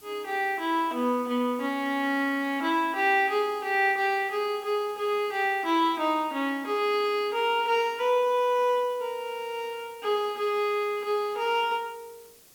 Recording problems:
background hiss; SNR 25 dB

